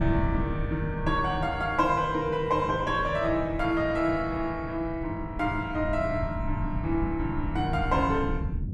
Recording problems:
low-frequency rumble; below 150 Hz, SNR 7 dB

